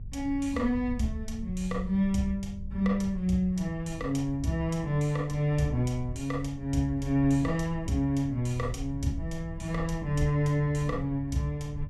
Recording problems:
electrical hum; 50 Hz, harmonics up to 450 Hz, SNR 22 dB
low-frequency rumble; below 86 Hz, SNR 13 dB

